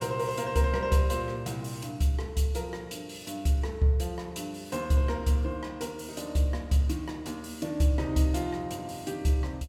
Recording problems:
none

